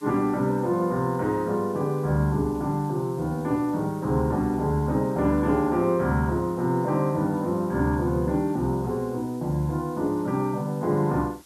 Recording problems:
hiss; slope 0 dB per octave, SNR 27 dB

